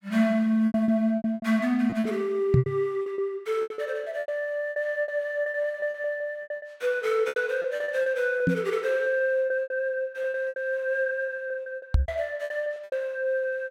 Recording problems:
lost packets; 16% of the sound replaced, filled with repeated pitch periods
knock on the microphone; at 2.5 s, at 8.5 s and at 12 s; peak +9 dB vs average level

